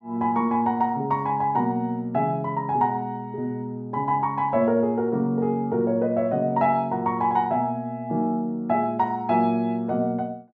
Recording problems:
none

